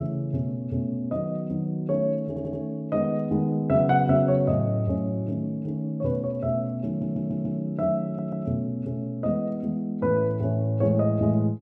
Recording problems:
stutter; at 2.5 s, at 7 s and at 8 s

